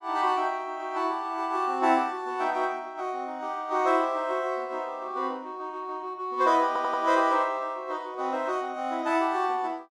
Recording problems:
audio stuttering; at 6.5 s

